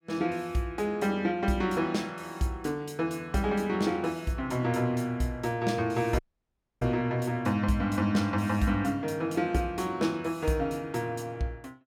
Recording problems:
dropout; at 6 s for 0.5 s

